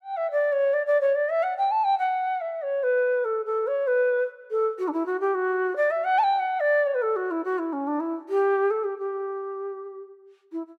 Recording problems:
none

